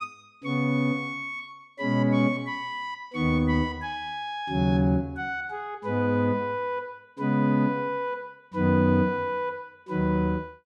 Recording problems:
none

